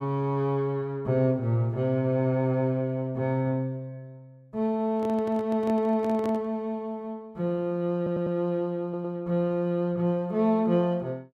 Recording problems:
microphone handling noise; from 5 to 6.5 s; peak -7 dB vs average level
stutter; at 8 s and at 9 s

